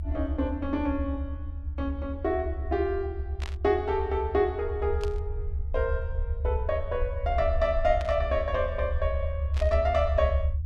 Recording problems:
low-frequency rumble; below 76 Hz, SNR 3 dB
burst of static; 4 times, first at 3.5 s; peak -7 dB vs average level

